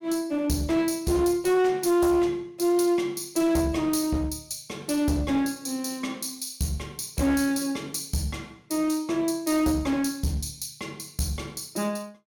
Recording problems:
distorted audio; hard clipping, uneven, signal-to-distortion ratio 10 dB

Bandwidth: 17.5 kHz